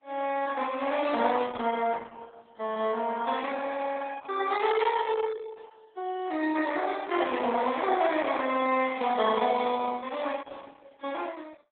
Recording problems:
lossy compression; AAC, then Opus, log-spectral distance 4 dB, nothing above 3.7 kHz

